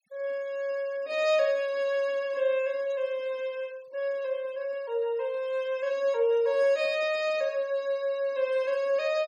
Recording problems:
denoising artefacts; signal-to-artefact ratio 25 dB

